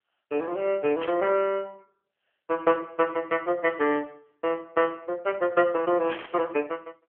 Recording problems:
telephone audio; 220 Hz to 3.2 kHz, AMR-NB
burst of static; at 1 s and at 6 s; peak -5 dB vs average level

